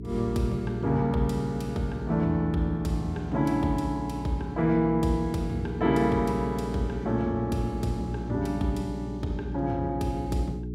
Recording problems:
electrical hum; 60 Hz, harmonics up to 420 Hz, SNR 9 dB

